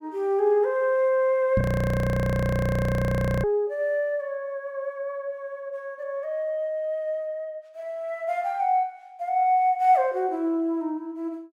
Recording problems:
microphone thump; at 1.5 s; peak +4 dB vs average level
audio freezing; at 1.5 s for 2 s

